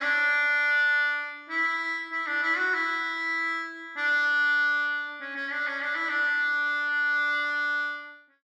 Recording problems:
none

